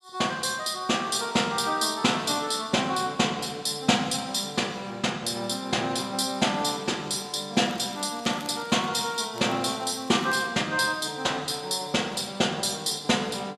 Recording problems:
crackle; from 7.5 to 10 s; loose cable, SNR 24 dB

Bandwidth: 14 kHz